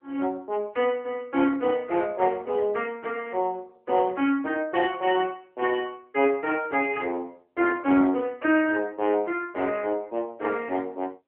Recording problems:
telephone audio; 240 Hz to 3.3 kHz, AMR-NB

